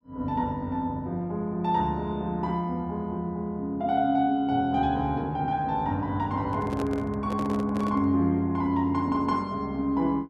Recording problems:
microphone handling noise; from 6.5 to 8 s; peak -5 dB vs average level

